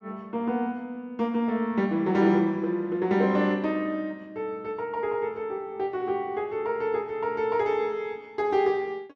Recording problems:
none

